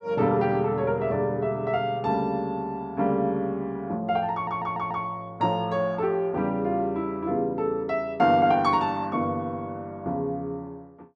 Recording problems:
stutter; at 4.5 s

